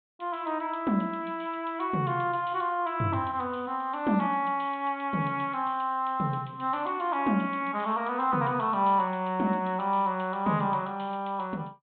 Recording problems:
treble missing; nothing above 4 kHz

